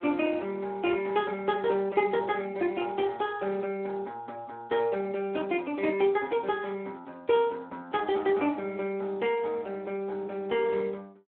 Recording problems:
phone line; 240 Hz to 3.5 kHz, Speex

